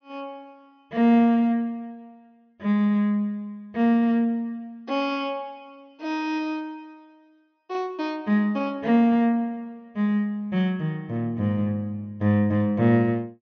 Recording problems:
treble cut off; nothing above 6.2 kHz

